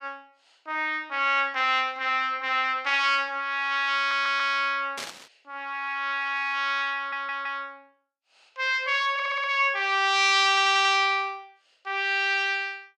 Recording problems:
stutter; 4 times, first at 4 s
static burst; at 5 s; peak -7 dB vs average level

